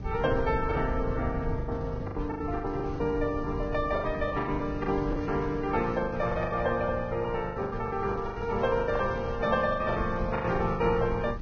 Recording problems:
lossy codec; Vorbis, log-spectral distance 2 dB, nothing above 5.5 kHz
low-frequency rumble; below 130 Hz, SNR 10 dB
wind on the microphone; below 240 Hz, SNR 13 dB
lost packets; 16% of the sound replaced, filled with the last packet

